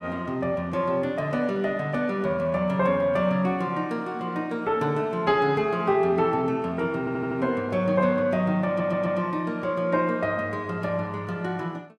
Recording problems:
stutter; at 7 s and at 8.5 s

